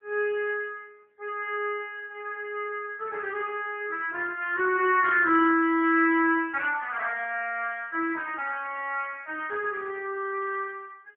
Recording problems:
phone line; 280 Hz to 3.3 kHz, AMR-NB

